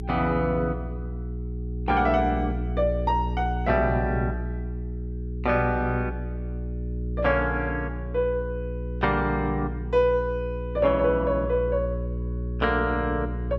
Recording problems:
hum; 60 Hz, harmonics up to 420 Hz, SNR 6 dB

